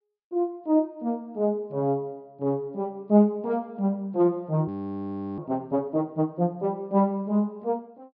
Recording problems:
treble cut off; nothing above 5.5 kHz
frozen audio; at 4.5 s for 0.5 s

